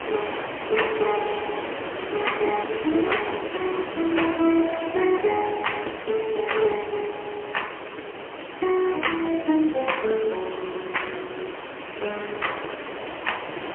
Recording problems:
telephone audio; 260 Hz to 3.2 kHz, AMR-NB, then MP3
hiss; SNR 8 dB

